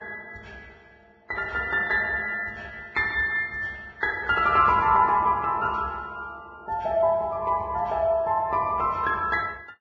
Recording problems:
lossy codec; Vorbis, log-spectral distance 2 dB, nothing above 7.3 kHz

